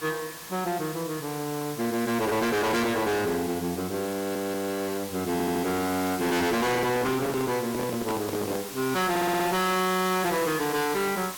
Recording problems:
distortion; hard clipping, signal-to-distortion ratio 7 dB
hiss; SNR 10 dB
audio stuttering; at 4 s, at 5.5 s and at 9 s
handling noise; from 6.5 to 8.5 s; peak -2 dB vs average level

